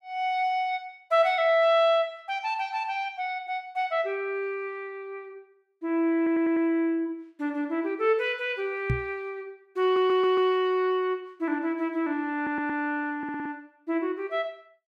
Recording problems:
stutter; 4 times, first at 6 s
microphone thump; at 9 s; peak +3 dB vs average level

